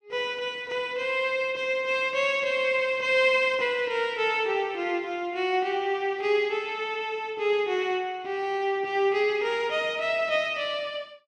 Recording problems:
none

